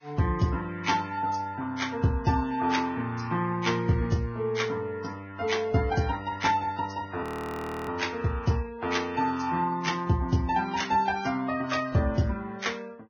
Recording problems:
codec artefacts; Vorbis, log-spectral distance 3 dB
audio freezing; at 7 s for 0.5 s

